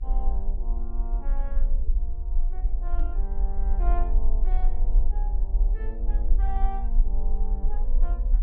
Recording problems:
hum; 60 Hz, harmonics up to 600 Hz, SNR 16 dB
rumble; below 40 Hz, strongest tone 18 Hz, SNR -13 dB
knock on the microphone; at 3 s; peak 0 dB vs average level

